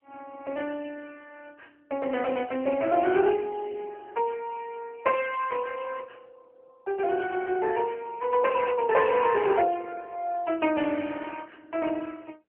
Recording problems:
telephone audio; 220 Hz to 3 kHz, AMR-NB

